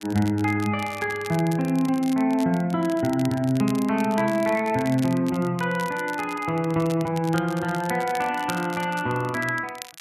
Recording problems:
crackling; vinyl, SNR 17 dB

